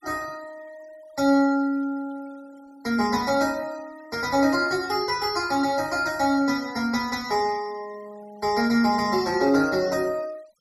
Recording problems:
noise reduction artefacts; signal-to-artefact ratio 24 dB

